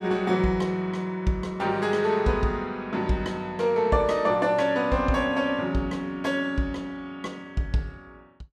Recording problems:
none

